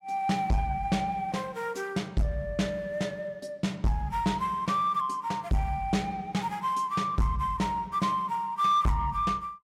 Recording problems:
distortion; soft clipping, signal-to-distortion ratio 7 dB

